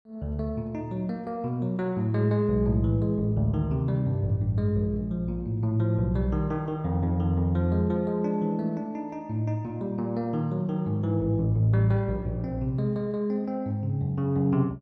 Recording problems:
none

